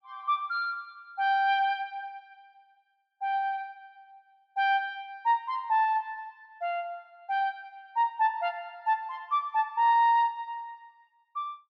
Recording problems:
none

